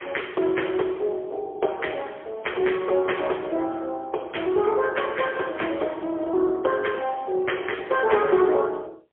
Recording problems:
phone line; 320 Hz to 3.3 kHz, AMR-NB, then MP3

